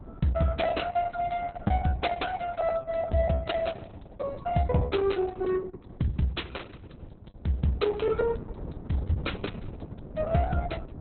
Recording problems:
lossy compression; Opus, log-spectral distance 5 dB, nothing above 4.1 kHz
wind noise; below 280 Hz, SNR 15 dB
packet loss; 7% of the sound replaced, filled with the last packet

